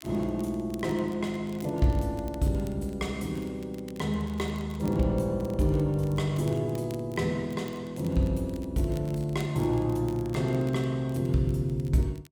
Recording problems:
crackling; vinyl, SNR 25 dB

